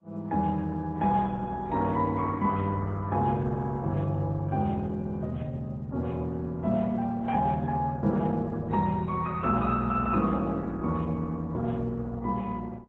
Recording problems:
lossy compression; AAC, then Opus, log-spectral distance 2 dB

